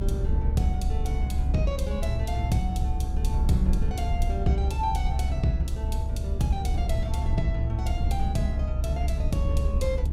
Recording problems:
rumble; below 70 Hz, SNR -3 dB

